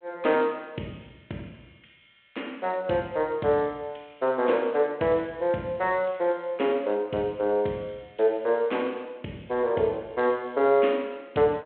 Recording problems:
phone line; 190 Hz to 3.4 kHz, G.726

